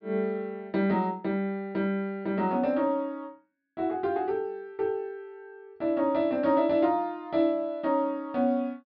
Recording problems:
treble missing; nothing above 5.5 kHz

